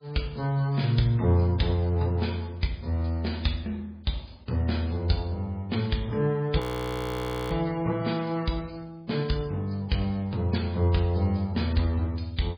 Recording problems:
codec artefacts; MP3, log-spectral distance 4 dB
frozen audio; at 6.5 s for 1 s

